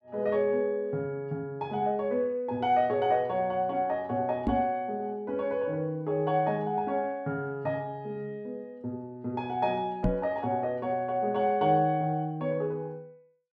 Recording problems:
microphone thump; at 4.5 s and at 10 s; peak +5 dB vs average level

